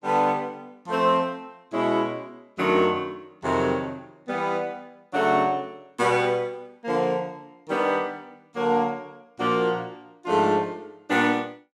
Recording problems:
none

